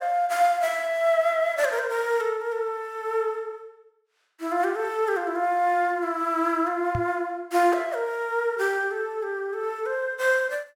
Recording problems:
microphone bump; at 7 s; peak -1 dB vs average level

